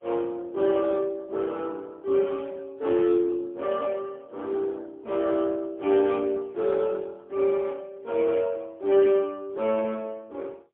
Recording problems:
phone line; 240 Hz to 3.5 kHz, AMR-NB, then MP3

